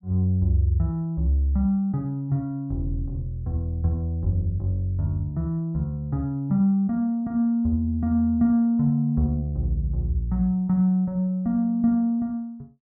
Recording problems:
none

